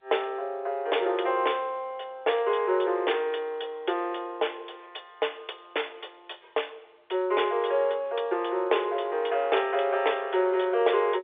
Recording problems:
phone line; 340 Hz to 3.6 kHz, G.711

